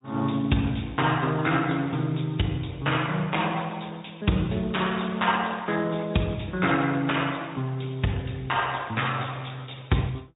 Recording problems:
low-pass filter; nothing above 3.8 kHz
codec artefacts; MP3, then Speex, log-spectral distance 6 dB

